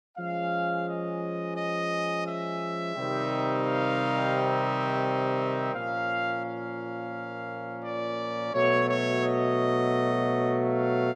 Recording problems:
none

